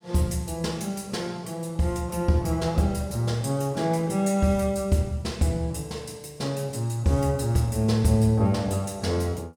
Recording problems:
none

